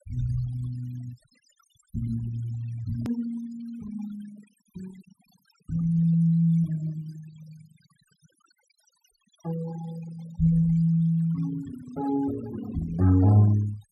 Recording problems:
noise reduction artefacts; signal-to-artefact ratio 20 dB
edit click; at 3 s

